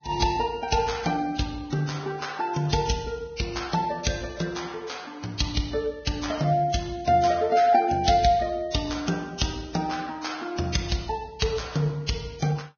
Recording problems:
lossy compression; Vorbis, log-spectral distance 5 dB, nothing above 6.5 kHz

